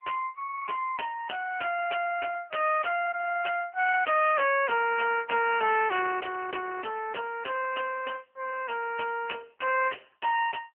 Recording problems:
telephone audio; 300 Hz to 3 kHz, AMR-NB

